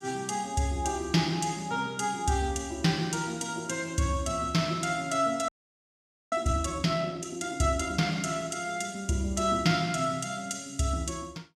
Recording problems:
audio freezing; at 5.5 s for 1 s

